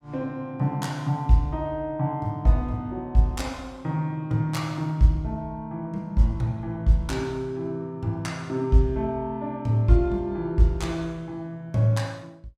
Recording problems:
none

